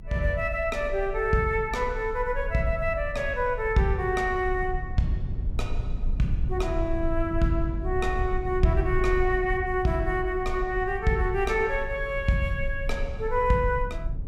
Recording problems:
rumble; below 68 Hz, strongest tone 24 Hz, SNR 8 dB

